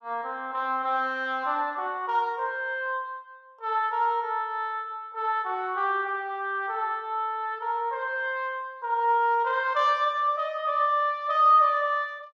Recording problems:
none

